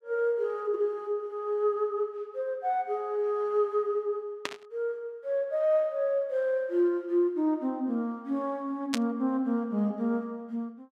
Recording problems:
static burst; at 4.5 s and at 9 s; peak +3 dB vs average level

